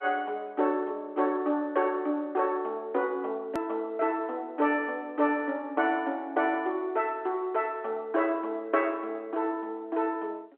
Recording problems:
phone line; 240 Hz to 3.7 kHz, G.711
click at an edit; at 3.5 s

